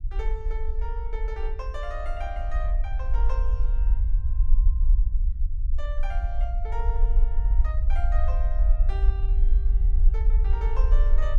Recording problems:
rumble; below 48 Hz, SNR -13 dB

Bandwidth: 12.5 kHz